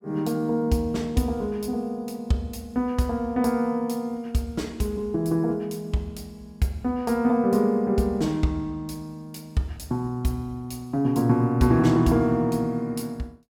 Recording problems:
none

